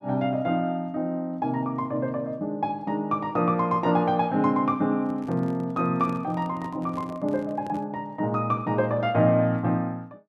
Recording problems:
microphone handling noise; from 5 to 8 s; peak -9 dB vs average level

